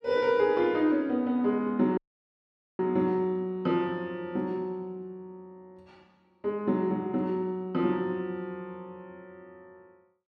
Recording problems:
audio cutting out; at 2 s for 1 s

